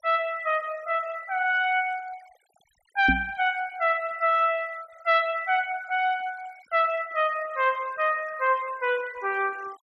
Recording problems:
denoising artefacts; signal-to-artefact ratio 23 dB
microphone thump; at 3 s; peak +3 dB vs average level

